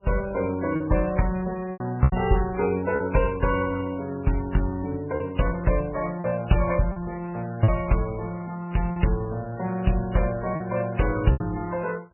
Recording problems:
lossy codec; MP3, then Vorbis, log-spectral distance 3 dB, nothing above 2.9 kHz
lost packets; 5% of the sound replaced, filled with repeated pitch periods

